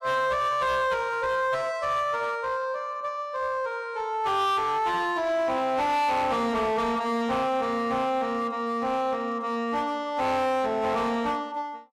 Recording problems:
distorted audio; hard clipping, uneven, signal-to-distortion ratio 10 dB

